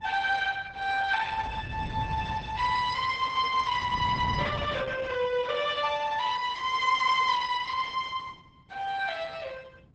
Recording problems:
lossy codec; Opus, log-spectral distance 5 dB, nothing above 8 kHz
wind noise; below 160 Hz, SNR 10 dB

